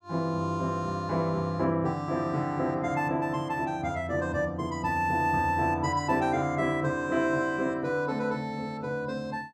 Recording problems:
none

